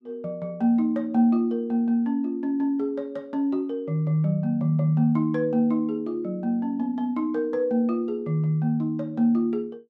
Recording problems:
none

